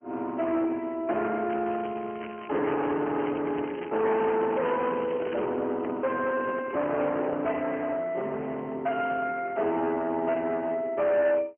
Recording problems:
phone line; 300 Hz to 3.2 kHz, Speex
distortion; hard clipping, signal-to-distortion ratio 8 dB
crackling; from 1.5 to 5.5 s; loose cable, SNR 17 dB
handling noise; from 4.5 to 7.5 s; peak -4 dB vs average level

